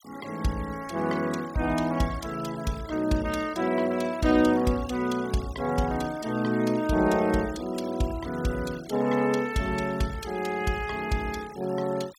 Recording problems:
noise reduction artefacts; signal-to-artefact ratio 19 dB

